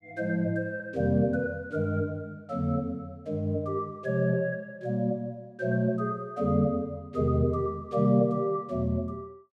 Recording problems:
none

